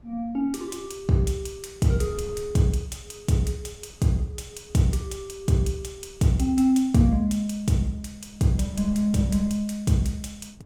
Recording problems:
wind on the microphone; below 160 Hz, SNR 22 dB

